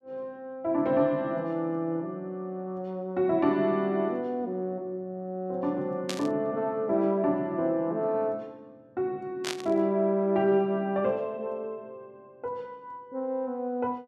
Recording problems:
static burst; at 6 s and at 9.5 s; peak 0 dB vs average level

